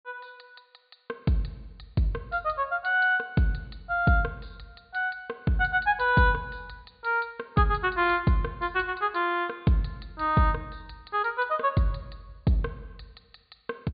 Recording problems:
low-pass filter; nothing above 4.5 kHz

